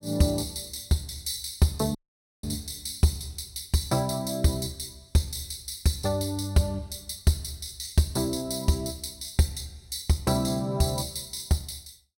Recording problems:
dropout; at 2 s

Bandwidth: 16.5 kHz